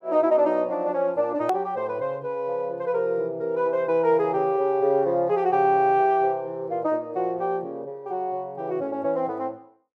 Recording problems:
hard cut with a click; at 1.5 s

